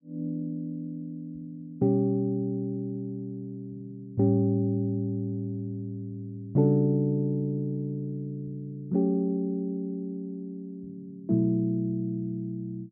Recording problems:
none

